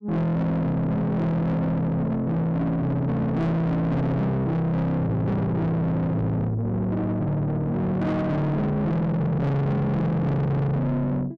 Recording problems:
distortion; soft clipping, signal-to-distortion ratio 7 dB

